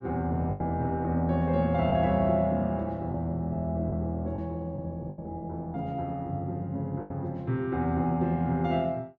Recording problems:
lost packets; 4% of the sound replaced, filled with the last packet

